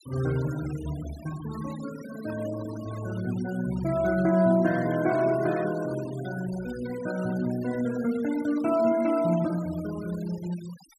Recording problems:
denoising artefacts; signal-to-artefact ratio 18 dB

